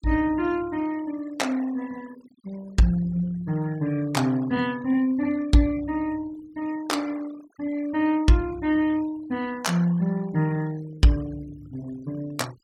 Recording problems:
denoising artefacts; signal-to-artefact ratio 23 dB

